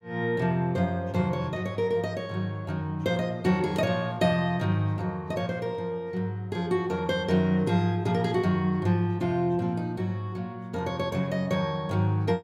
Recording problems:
none

